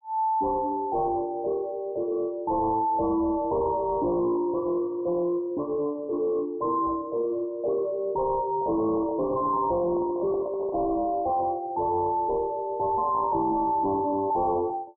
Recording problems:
distortion; soft clipping, signal-to-distortion ratio 6 dB
handling noise; from 8.5 to 11 s; peak -6 dB vs average level

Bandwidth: 1 kHz